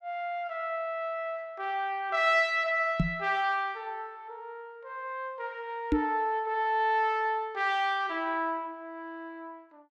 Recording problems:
microphone bump; at 3 s and at 6 s; peak +7 dB vs average level

